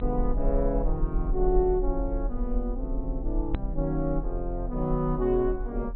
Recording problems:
low-pass filter; nothing above 4 kHz
low-frequency rumble; below 42 Hz, strongest tone 36 Hz, SNR 4 dB
hard cut with a click; at 3.5 s

